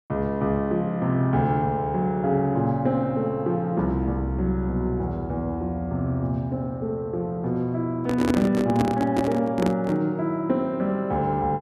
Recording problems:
handling noise; from 8 to 10 s; peak +4 dB vs average level

